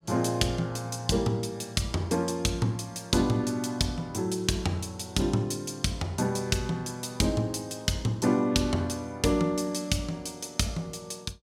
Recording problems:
none

